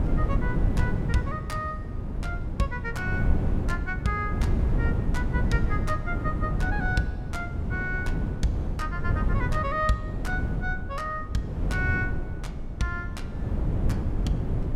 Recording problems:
wind on the microphone; below 160 Hz, SNR -3 dB

